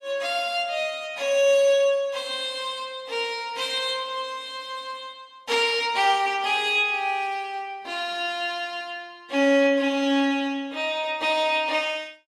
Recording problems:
lossy codec; AAC, log-spectral distance 2 dB

